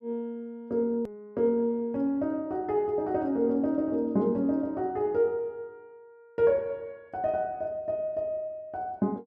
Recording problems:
click at an edit; at 1 s

